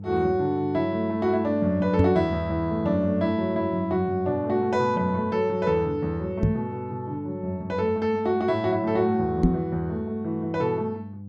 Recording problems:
mains hum; 50 Hz, harmonics up to 500 Hz, SNR 14 dB
microphone bump; at 2 s, at 6.5 s and at 9.5 s; peak +8 dB vs average level

